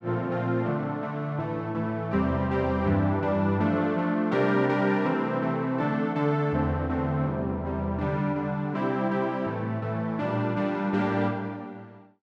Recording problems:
none

